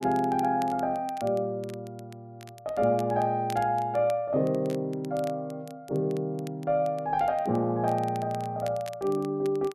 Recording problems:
crackle; vinyl, SNR 23 dB

